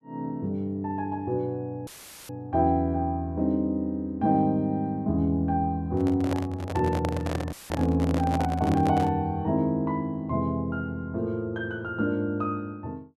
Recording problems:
dropout; at 2 s and at 7.5 s; filled with static
handling noise; from 6 to 9 s; peak 0 dB vs average level

